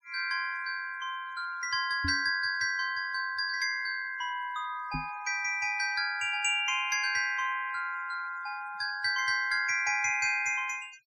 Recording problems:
noise reduction artefacts; signal-to-artefact ratio 25 dB
knock on the microphone; at 2 s and at 5 s; peak -2 dB vs average level

